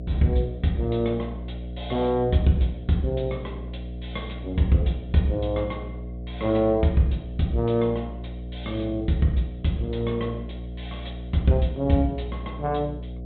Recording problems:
low-pass filter; nothing above 3.9 kHz
hum; 60 Hz, harmonics up to 720 Hz, SNR 11 dB

